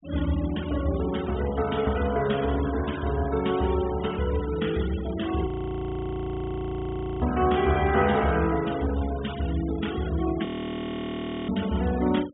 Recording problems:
treble missing; nothing above 4 kHz
denoising artefacts; signal-to-artefact ratio 16 dB
frozen audio; at 5.5 s for 2 s and at 10 s for 1 s

